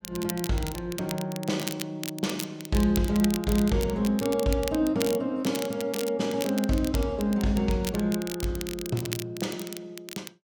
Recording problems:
crackle; vinyl, SNR 10 dB

